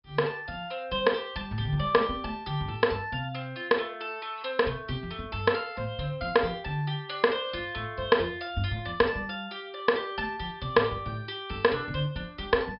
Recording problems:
treble missing; nothing above 5.5 kHz

